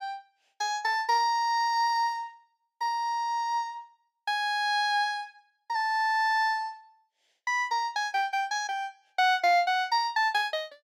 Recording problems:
none

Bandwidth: 16.5 kHz